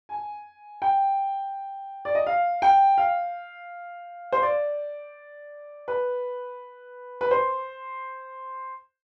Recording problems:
none

